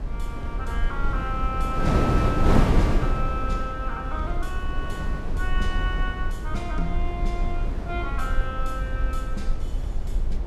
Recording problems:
rumble; below 48 Hz, strongest tone 22 Hz, SNR -1 dB
wind noise; below 390 Hz, SNR -3 dB

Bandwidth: 14.5 kHz